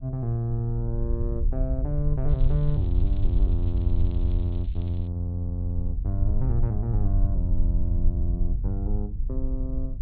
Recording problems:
treble cut off; nothing above 4.1 kHz
wind on the microphone; below 60 Hz, SNR -1 dB
crackling; from 2.5 to 5 s; loose cable, SNR 28 dB

